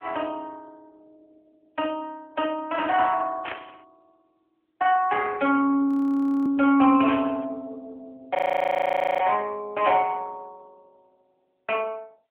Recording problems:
phone line; 220 Hz to 3.2 kHz, AMR-NB
burst of static; at 3.5 s, at 7 s and at 10 s; peak -4 dB vs average level
audio freezing; at 6 s for 0.5 s and at 8.5 s for 1 s

